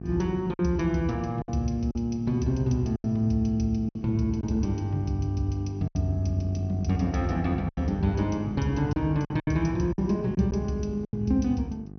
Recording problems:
treble cut off; nothing above 6.1 kHz
hum; 50 Hz, harmonics up to 800 Hz, SNR 13 dB
lost packets; 6% of the sound replaced, filled with silence

